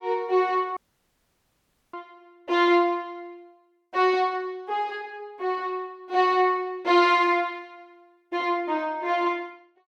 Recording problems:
audio cutting out; at 1 s for 1 s

